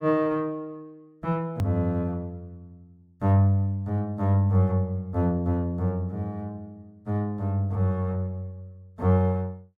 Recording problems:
edit click; at 1.5 s

